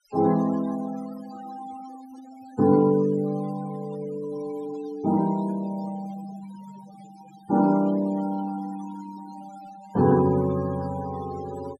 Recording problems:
denoising artefacts; signal-to-artefact ratio 19 dB

